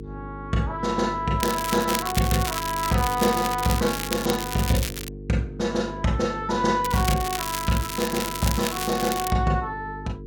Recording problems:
electrical hum; 50 Hz, harmonics up to 450 Hz, SNR 12 dB
crackling; from 1.5 to 5 s and from 7 to 9.5 s; loose cable, SNR 6 dB

